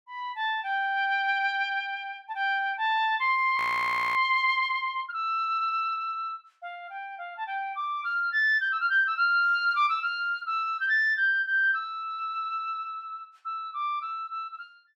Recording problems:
frozen audio; at 3.5 s for 0.5 s

